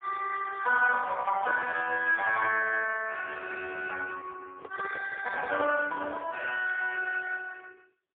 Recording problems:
phone line; 340 Hz to 2.6 kHz, AMR-NB, then MP3
crackle; from 0.5 to 3.5 s and from 5 to 7 s; loose cable, SNR 27 dB
handling noise; from 4.5 to 6.5 s; peak -9 dB vs average level

